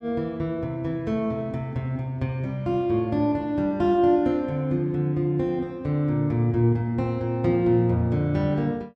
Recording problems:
none

